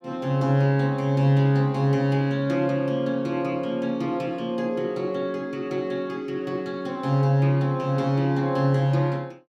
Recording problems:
none

